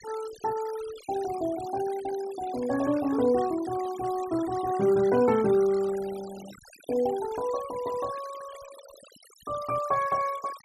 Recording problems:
noise reduction artefacts; signal-to-artefact ratio 17 dB

